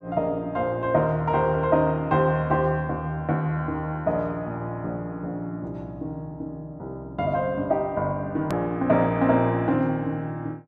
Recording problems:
hard cut with a click; at 8.5 s

